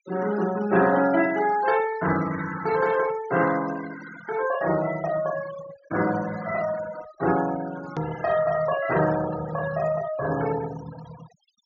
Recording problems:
treble cut off; nothing above 6.9 kHz
noise reduction artefacts; signal-to-artefact ratio 14 dB
hard cut with a click; at 8 s

